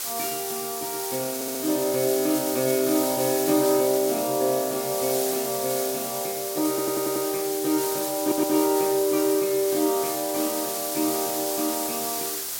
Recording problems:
background hiss; SNR 3 dB
stutter; at 1.5 s, at 6.5 s and at 8 s

